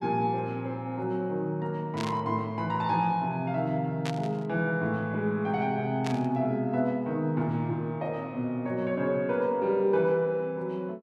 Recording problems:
static burst; at 2 s, at 4 s and at 6 s; peak -4 dB vs average level

